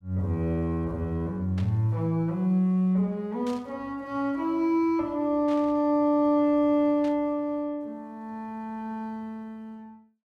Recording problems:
burst of static; 4 times, first at 1.5 s; peak -14 dB vs average level

